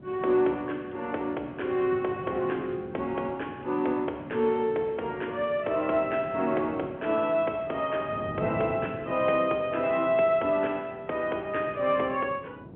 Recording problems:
telephone audio; 260 Hz to 3.3 kHz, G.711
wind noise; below 380 Hz, SNR 16 dB

